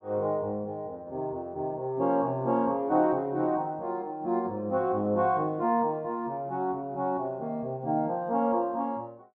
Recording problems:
none

